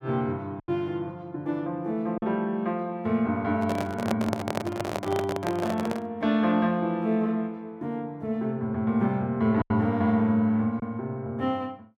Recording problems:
packet loss; 1.9% of the sound replaced, filled with silence
microphone handling noise; from 3.5 to 6 s; peak +2 dB vs average level

